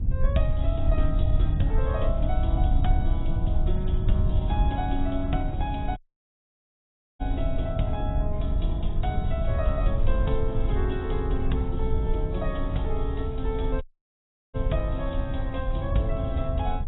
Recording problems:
lossy compression; AAC, log-spectral distance 2 dB, nothing above 3.5 kHz
hum; 60 Hz, harmonics up to 1.1 kHz, SNR 19 dB
low-frequency rumble; below 80 Hz, SNR -4 dB
audio cutting out; at 6 s for 1 s and at 14 s for 0.5 s

